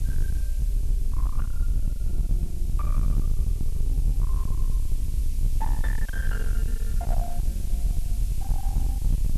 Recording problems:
distorted audio; hard clipping, signal-to-distortion ratio 7 dB
background hiss; SNR 5 dB
rumble; below 52 Hz, SNR -13 dB

